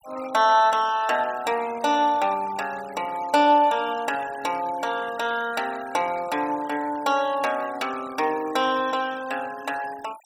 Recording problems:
noise reduction artefacts; signal-to-artefact ratio 20 dB

